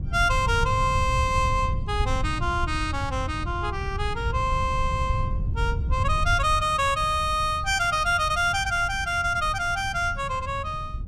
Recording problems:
wind noise; below 110 Hz, SNR 6 dB

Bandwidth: 14.5 kHz